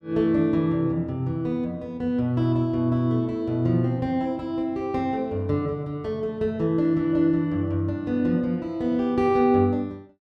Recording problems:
none

